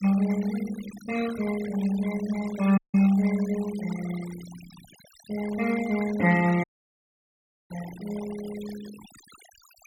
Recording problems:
noise reduction artefacts; signal-to-artefact ratio 16 dB
audio cutting out; at 3 s and at 6.5 s for 1 s

